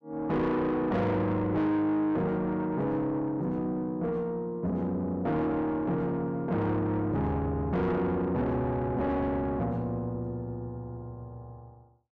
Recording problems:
distortion; soft clipping, signal-to-distortion ratio 7 dB

